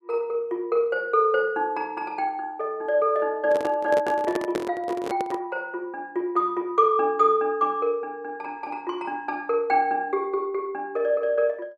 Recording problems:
microphone handling noise; from 3.5 to 5.5 s; peak 0 dB vs average level

